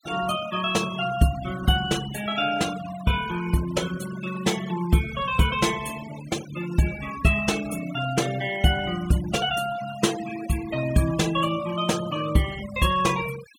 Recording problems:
noise reduction artefacts; signal-to-artefact ratio 14 dB

